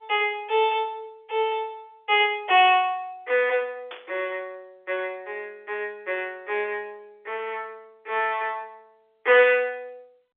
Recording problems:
telephone audio; 300 Hz to 3.7 kHz, G.711
burst of static; at 4 s; peak -10 dB vs average level

